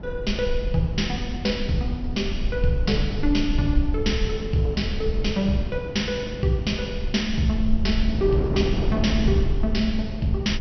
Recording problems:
low-pass filter; nothing above 6 kHz
low-frequency rumble; below 56 Hz, SNR 6 dB
wind on the microphone; below 280 Hz, SNR 8 dB

